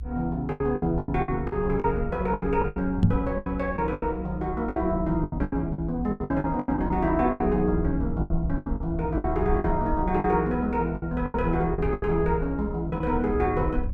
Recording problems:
rumble; below 76 Hz, SNR 8 dB
lost packets; 15% of the sound replaced, filled with the last packet
microphone bump; at 3 s; peak +10 dB vs average level

